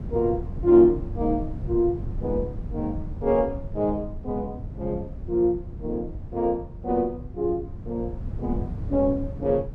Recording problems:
low-frequency rumble; below 130 Hz, SNR 10 dB

